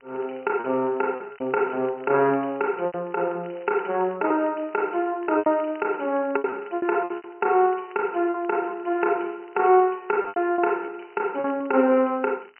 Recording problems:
telephone audio; 220 Hz to 3.1 kHz, G.711
crackling; vinyl, SNR 30 dB
lost packets; 7% of the sound replaced, filled with repeated pitch periods

